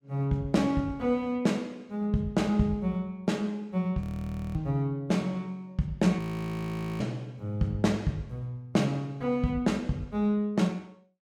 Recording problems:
audio freezing; at 4 s for 0.5 s and at 6 s for 1 s

